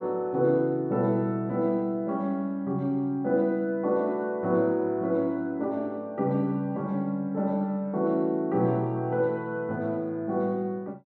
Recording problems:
none

